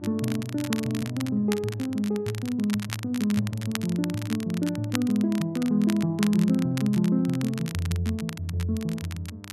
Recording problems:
hum; 50 Hz, harmonics up to 900 Hz, SNR 19 dB
crackle; vinyl, SNR 13 dB

